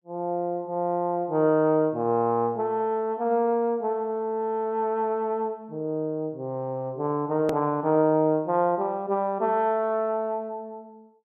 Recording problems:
click at an edit; at 7.5 s

